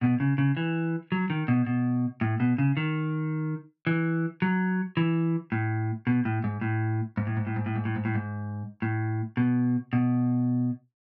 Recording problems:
none

